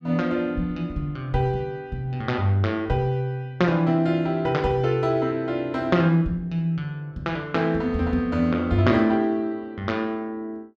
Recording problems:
none

